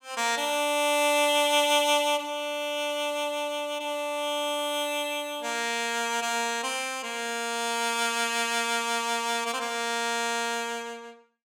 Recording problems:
none

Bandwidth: 17.5 kHz